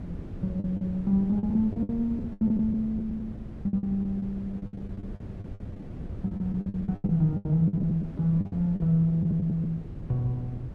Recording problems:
wind noise; below 220 Hz, SNR 12 dB
packet loss; 16% of the sound replaced, filled with the last packet

